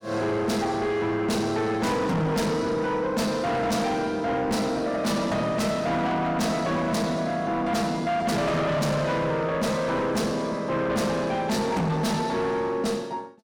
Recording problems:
distorted audio; soft clipping, signal-to-distortion ratio 7 dB

